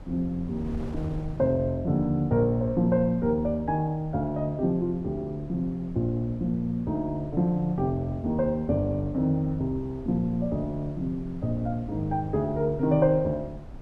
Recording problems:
wind on the microphone; below 140 Hz, SNR 16 dB

